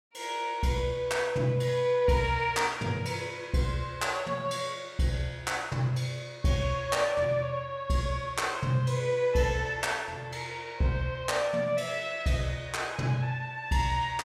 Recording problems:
none

